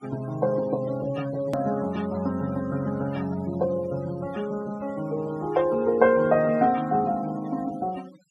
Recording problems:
denoising artefacts; signal-to-artefact ratio 20 dB
click at an edit; at 1.5 s

